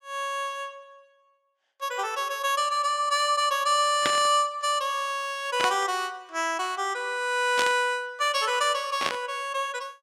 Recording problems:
burst of static; 4 times, first at 4 s; peak +3 dB vs average level

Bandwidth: 17 kHz